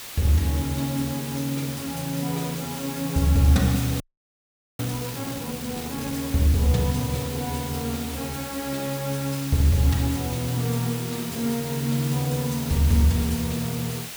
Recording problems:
hiss; slope 0 dB per octave, SNR 9 dB
audio freezing; at 4 s for 1 s

